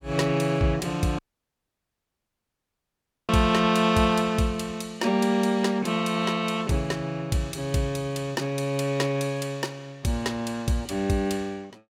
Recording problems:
audio cutting out; at 1 s for 2 s

